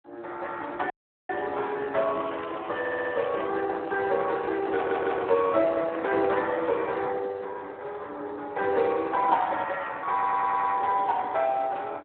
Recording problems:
telephone audio; 280 Hz to 3 kHz, Speex
dropout; at 1 s
crackle; from 2 to 3.5 s; loose cable, SNR 19 dB
audio stuttering; at 3 s, at 5 s and at 10 s
microphone handling noise; from 3 to 6.5 s; peak -6 dB vs average level

